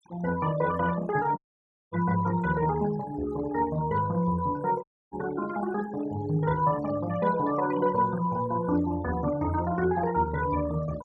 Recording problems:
noise reduction artefacts; signal-to-artefact ratio 17 dB
audio cutting out; at 1.5 s for 0.5 s and at 5 s

